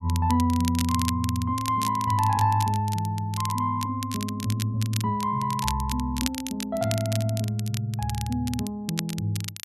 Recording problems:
crackling; vinyl, SNR 10 dB

